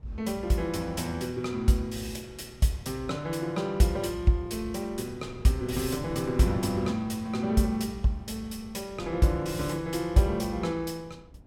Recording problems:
wind noise; below 220 Hz, SNR 20 dB

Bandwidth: 16.5 kHz